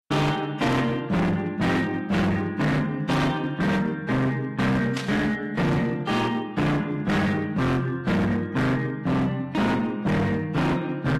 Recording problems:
lossy codec; AAC, log-spectral distance 2 dB, nothing above 13.1 kHz
distortion; hard clipping, signal-to-distortion ratio 6 dB
burst of static; at 5 s; peak -5 dB vs average level

